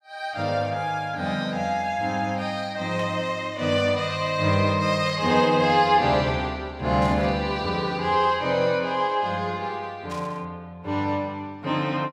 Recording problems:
static burst; 4 times, first at 3 s; peak -14 dB vs average level

